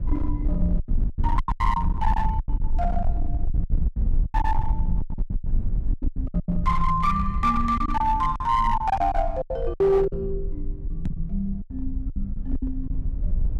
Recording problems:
distorted audio; hard clipping, signal-to-distortion ratio 11 dB
low-frequency rumble; below 60 Hz, SNR 3 dB
packet loss; 15% of the sound replaced, filled with silence
microphone bump; at 11 s; peak +3 dB vs average level

